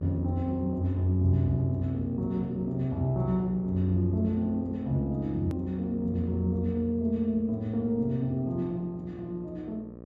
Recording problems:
hum; 60 Hz, harmonics up to 1.3 kHz, SNR 15 dB
edit click; at 5.5 s

